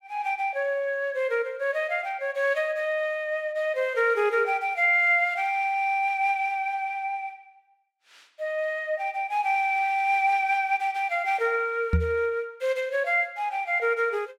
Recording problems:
microphone thump; at 12 s; peak +5 dB vs average level

